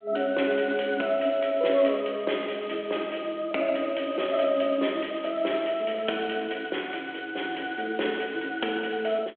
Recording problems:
phone line; 260 Hz to 3.4 kHz, G.726

